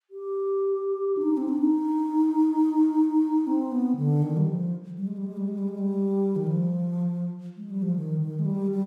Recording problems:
none

